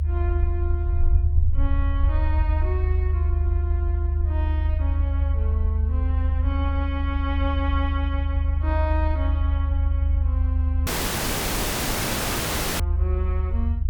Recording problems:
low-frequency rumble; below 78 Hz, strongest tone 76 Hz, SNR -10 dB
audio cutting out; at 11 s for 2 s

